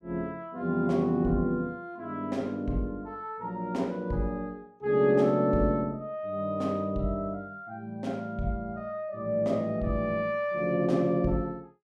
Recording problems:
none

